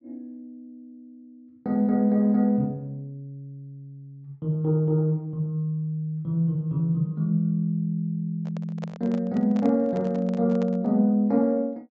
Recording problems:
treble missing; nothing above 8 kHz
microphone handling noise; from 8.5 to 11 s; peak -10 dB vs average level

